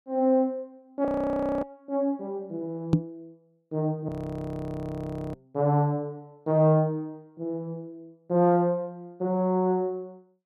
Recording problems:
frozen audio; at 1 s for 0.5 s and at 4 s for 1.5 s
microphone bump; at 3 s and at 5.5 s; peak +9 dB vs average level

